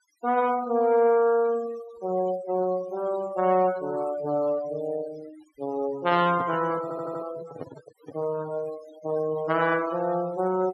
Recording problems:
noise reduction artefacts; signal-to-artefact ratio 18 dB
microphone handling noise; from 6 to 8.5 s; peak -7 dB vs average level
audio stuttering; at 7 s

